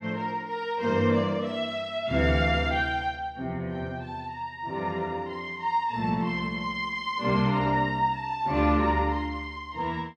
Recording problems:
none

